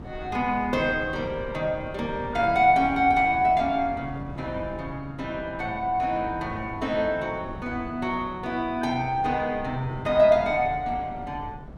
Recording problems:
wind on the microphone; below 280 Hz, SNR 16 dB

